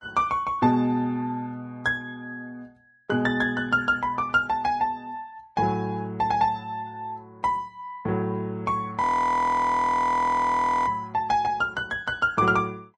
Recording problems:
lossy compression; Vorbis, log-spectral distance 2 dB, nothing above 13.3 kHz
audio freezing; at 9 s for 2 s

